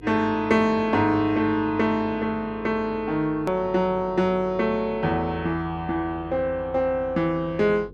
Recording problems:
hum; 50 Hz, harmonics up to 500 Hz, SNR 22 dB
click at an edit; at 3.5 s

